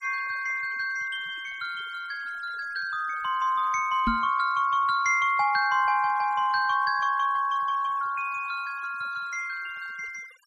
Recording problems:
noise reduction artefacts; signal-to-artefact ratio 25 dB
microphone bump; at 4 s; peak +1 dB vs average level

